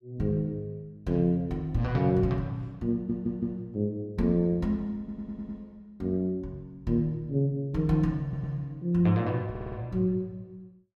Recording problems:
stutter; 4 times, first at 3 s

